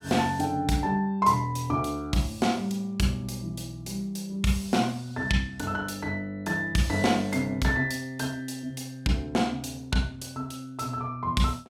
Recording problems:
none

